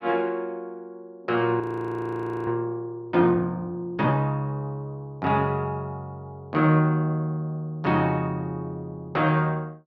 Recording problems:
audio freezing; at 1.5 s for 1 s

